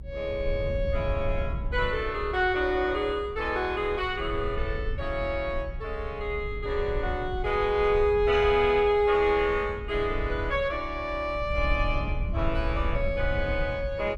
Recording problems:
rumble; below 80 Hz, SNR 8 dB

